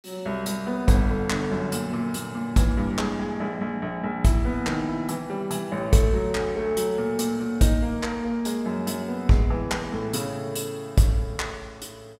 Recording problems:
none

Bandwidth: 16.5 kHz